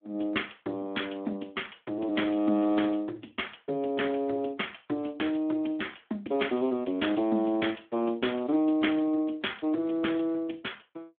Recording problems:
phone line; 240 Hz to 3.4 kHz, Speex

